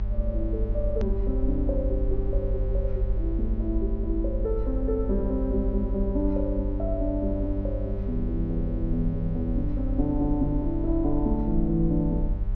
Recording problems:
treble cut off; nothing above 6.7 kHz
hum; 50 Hz, harmonics up to 800 Hz, SNR 8 dB
low-frequency rumble; below 52 Hz, strongest tone 40 Hz, SNR 2 dB
edit click; at 1 s

